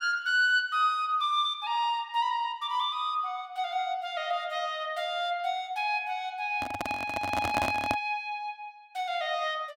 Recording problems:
handling noise; from 6.5 to 8 s; peak +3 dB vs average level

